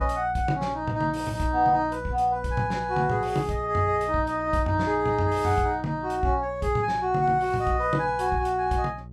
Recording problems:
electrical hum; 60 Hz, harmonics up to 540 Hz, SNR 16 dB

